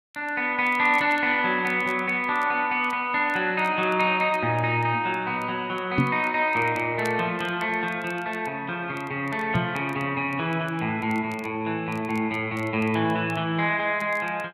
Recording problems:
crackling; vinyl, SNR 29 dB
knock on the microphone; at 6 s and at 9.5 s; peak +5 dB vs average level

